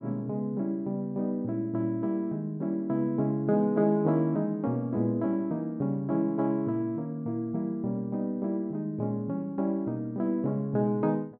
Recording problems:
treble cut off; nothing above 5.5 kHz

